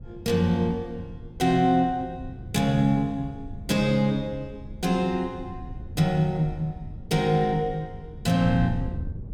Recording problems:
wind on the microphone; below 140 Hz, SNR 14 dB

